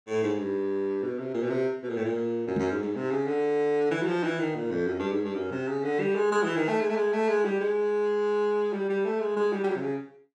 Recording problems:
microphone bump; at 2.5 s; peak +1 dB vs average level

